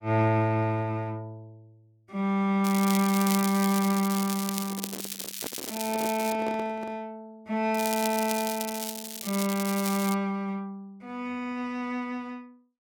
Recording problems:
crackling; from 2.5 to 6.5 s and from 7.5 to 10 s; loose cable, SNR 7 dB
microphone handling noise; from 4.5 to 7 s; peak -4 dB vs average level

